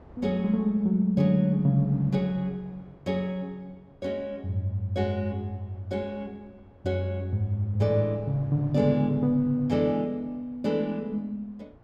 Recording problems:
wind noise; below 490 Hz, SNR 24 dB

